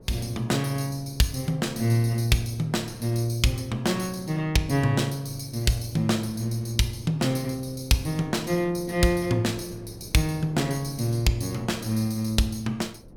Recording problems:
wind noise; below 340 Hz, SNR 22 dB

